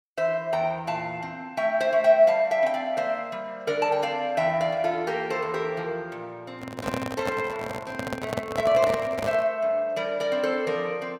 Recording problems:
microphone handling noise; from 6.5 to 9.5 s; peak +1 dB vs average level

